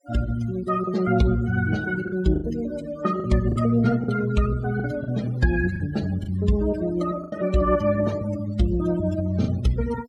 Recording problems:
noise reduction artefacts; signal-to-artefact ratio 19 dB
lost packets; 5% of the sound replaced, filled with the last packet

